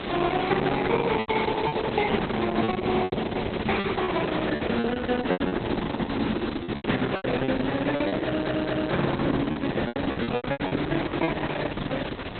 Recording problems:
lossy compression; Opus, log-spectral distance 15 dB, nothing above 4 kHz
hiss; SNR 6 dB
packet loss; 11% of the sound replaced, filled with repeated pitch periods
stutter; at 8.5 s

